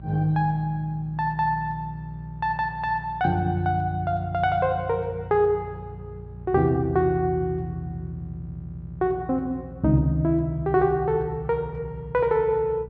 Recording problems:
hum; 60 Hz, harmonics up to 600 Hz, SNR 17 dB

